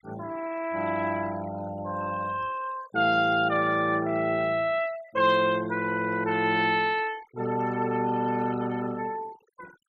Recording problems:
noise reduction artefacts; signal-to-artefact ratio 20 dB

